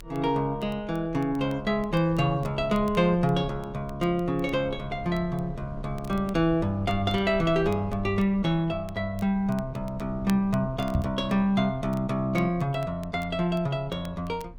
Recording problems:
rumble; below 100 Hz, strongest tone 32 Hz, SNR 17 dB
crackle; vinyl, SNR 27 dB
microphone bump; at 11 s; peak +4 dB vs average level

